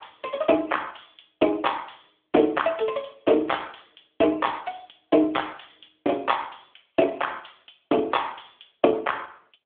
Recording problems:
telephone audio; 240 Hz to 3.5 kHz, AMR-NB

